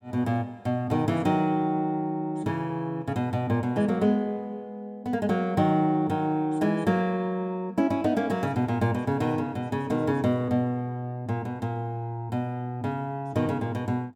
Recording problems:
none

